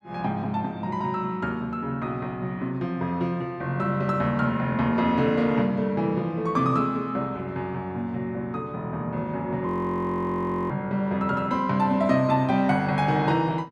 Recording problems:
frozen audio; at 9.5 s for 1 s

